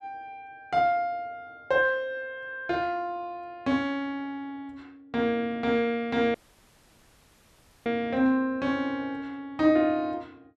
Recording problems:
dropout; at 6.5 s for 1.5 s

